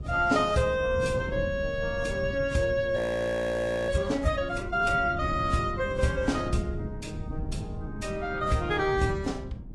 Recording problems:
lossy compression; AAC, then Vorbis, log-spectral distance 2 dB, nothing above 11 kHz
wind noise; below 190 Hz, SNR 10 dB
frozen audio; at 3 s for 1 s

